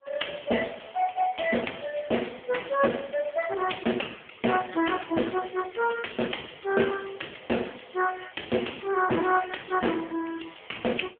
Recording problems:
phone line; 220 Hz to 3.3 kHz, AMR-NB

